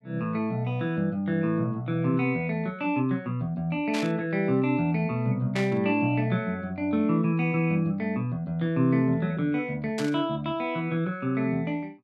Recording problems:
static burst; at 4 s, at 5.5 s and at 10 s; peak -4 dB vs average level

